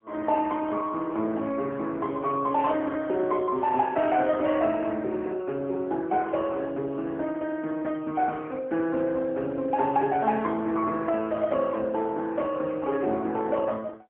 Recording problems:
phone line; 240 Hz to 3.1 kHz, AMR-NB, then MP3

